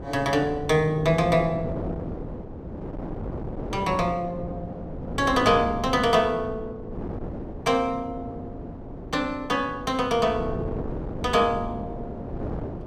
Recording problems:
wind noise; below 440 Hz, SNR 10 dB

